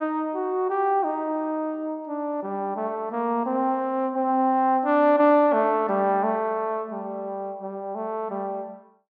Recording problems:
none

